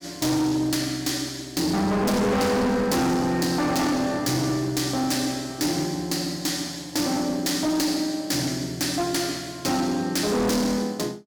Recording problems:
distortion; hard clipping, signal-to-distortion ratio 6 dB

